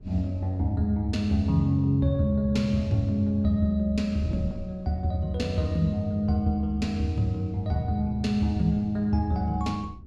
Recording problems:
wind on the microphone; below 140 Hz, SNR 19 dB

